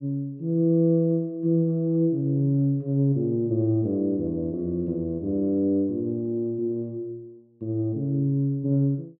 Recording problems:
none

